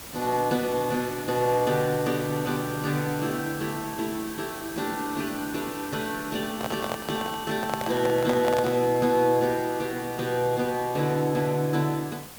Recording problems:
hiss; slope -3 dB per octave, SNR 13 dB
microphone handling noise; from 6.5 to 9 s; peak +1 dB vs average level

